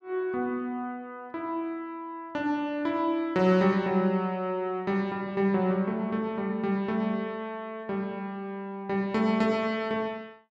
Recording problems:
none

